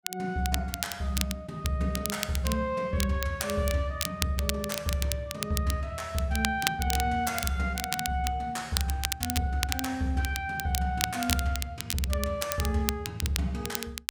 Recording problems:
crackle; vinyl, SNR 4 dB

